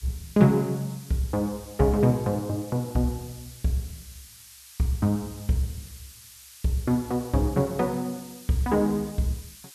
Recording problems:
background hiss; slope +6 dB per octave, SNR 19 dB

